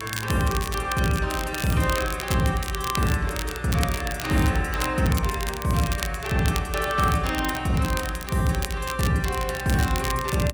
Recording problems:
electrical hum; 60 Hz, harmonics up to 480 Hz, SNR 22 dB
crackling; vinyl, SNR 10 dB

